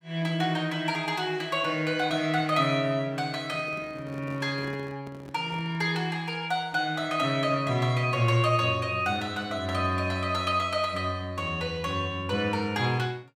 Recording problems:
microphone handling noise; from 3.5 to 6 s; peak -12 dB vs average level

